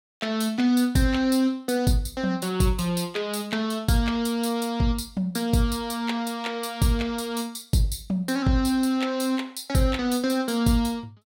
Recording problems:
none

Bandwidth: 16.5 kHz